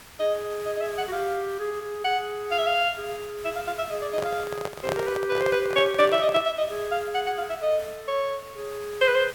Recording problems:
hiss; slope -2 dB per octave, SNR 18 dB
handling noise; from 4 to 6.5 s; peak +1 dB vs average level

